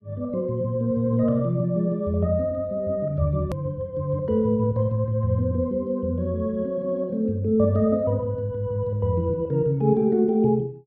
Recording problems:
click at an edit; at 3.5 s

